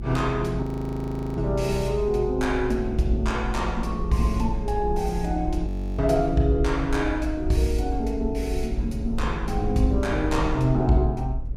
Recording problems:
low-frequency rumble; below 54 Hz, strongest tone 52 Hz, SNR 7 dB
wind on the microphone; below 280 Hz, SNR 18 dB
audio freezing; at 0.5 s for 0.5 s and at 5.5 s

